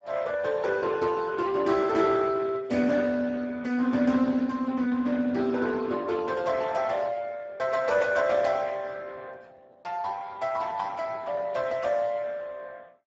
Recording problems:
lossy codec; Speex, log-spectral distance 4 dB, nothing above 7.3 kHz

